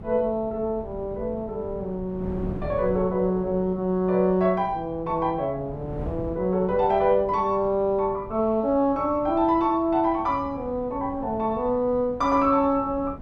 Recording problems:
wind on the microphone; below 250 Hz, SNR 16 dB

